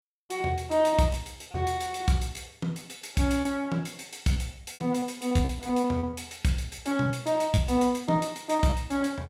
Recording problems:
packet loss; 8% of the sound replaced, filled with repeated pitch periods

